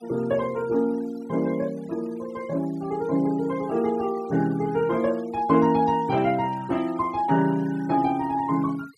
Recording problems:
denoising artefacts; signal-to-artefact ratio 23 dB

